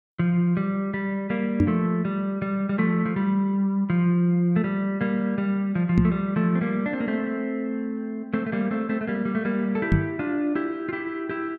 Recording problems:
knock on the microphone; at 1.5 s, at 6 s and at 10 s; peak +7 dB vs average level

